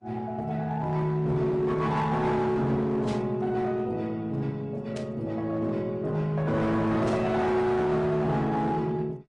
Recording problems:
codec artefacts; Opus, then AAC, log-spectral distance 2 dB, nothing above 10.4 kHz
distortion; hard clipping, signal-to-distortion ratio 12 dB
static burst; at 3 s, at 5 s and at 7 s; peak -11 dB vs average level

